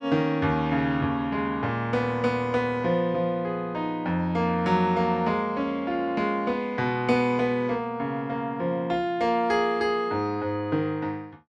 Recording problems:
none

